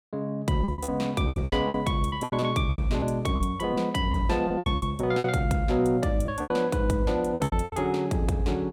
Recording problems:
packet loss; 14% of the sound replaced, filled with repeated pitch periods

